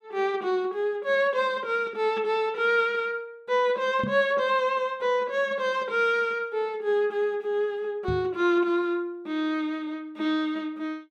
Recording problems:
microphone thump; at 4 s and at 8 s; peak -1 dB vs average level

